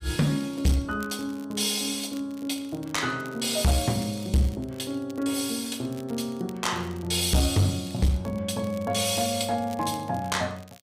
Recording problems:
distortion; hard clipping, uneven, signal-to-distortion ratio 10 dB
crackling; vinyl, SNR 23 dB

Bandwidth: 15.5 kHz